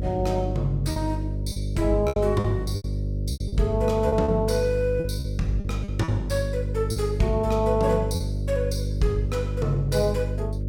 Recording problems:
hum; 50 Hz, harmonics up to 600 Hz, SNR 3 dB
packet loss; 7% of the sound replaced, filled with repeated pitch periods

